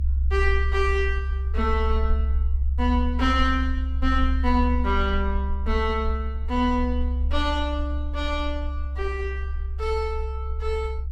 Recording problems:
rumble; below 68 Hz, strongest tone 66 Hz, SNR 0 dB

